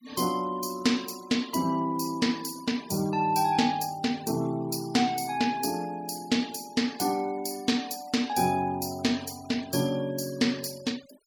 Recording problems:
noise reduction artefacts; signal-to-artefact ratio 20 dB

